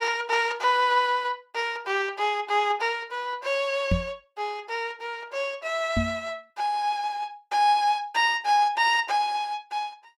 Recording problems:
microphone bump; at 4 s and at 6 s; peak +4 dB vs average level

